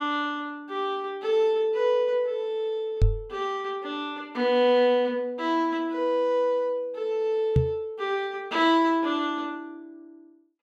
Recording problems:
microphone thump; at 3 s and at 7.5 s; peak +8 dB vs average level

